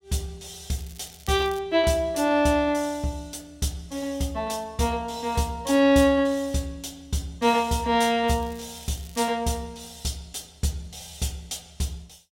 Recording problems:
crackle; at 0.5 s and at 8.5 s; loose cable, SNR 22 dB

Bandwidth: 16 kHz